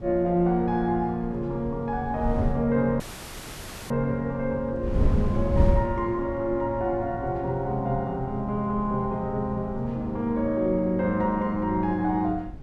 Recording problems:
wind noise; below 130 Hz, SNR 7 dB
dropout; at 3 s for 1 s

